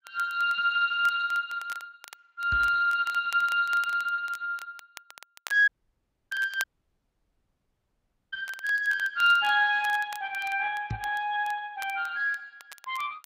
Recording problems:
lossy compression; Speex, log-spectral distance 3 dB
crackling; vinyl, SNR 20 dB
microphone thump; at 2.5 s, at 8.5 s and at 11 s; peak -3 dB vs average level
dropout; at 5.5 s for 0.5 s and at 6.5 s for 1.5 s

